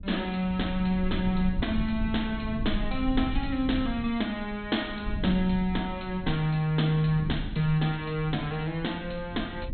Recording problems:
treble missing; nothing above 4.1 kHz
rumble; below 110 Hz, SNR 9 dB

